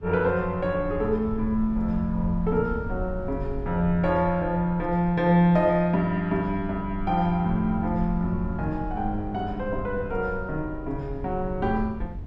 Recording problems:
rumble; below 82 Hz, SNR 12 dB

